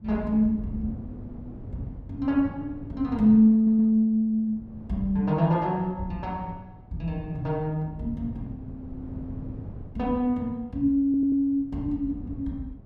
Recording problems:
wind on the microphone; below 210 Hz, SNR 18 dB
stutter; at 3.5 s and at 11 s

